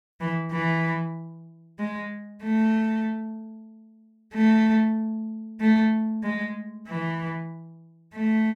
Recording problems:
none

